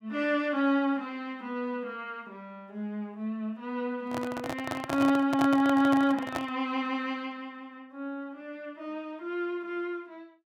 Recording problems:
handling noise; from 4 to 6.5 s; peak +2 dB vs average level

